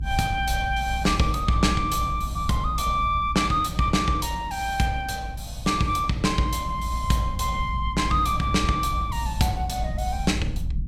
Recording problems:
rumble; below 90 Hz, strongest tone 56 Hz, SNR 7 dB

